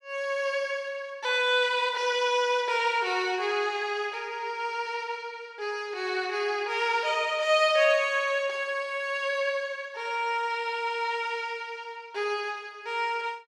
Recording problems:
none

